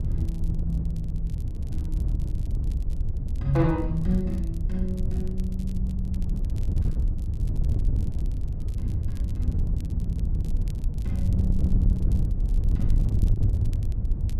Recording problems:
wind on the microphone; below 92 Hz, SNR -4 dB
crackling; vinyl, SNR 24 dB

